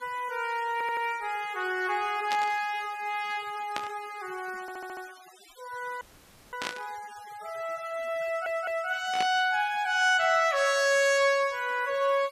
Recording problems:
denoising artefacts; signal-to-artefact ratio 21 dB
stutter; at 0.5 s, at 4.5 s and at 8.5 s
static burst; 4 times, first at 2.5 s; peak -1 dB vs average level
dropout; at 6 s for 0.5 s

